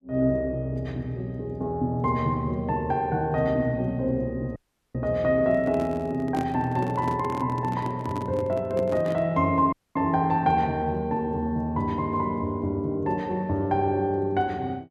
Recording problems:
dropout; at 4.5 s and at 9.5 s
handling noise; from 5.5 to 9.5 s; peak -1 dB vs average level

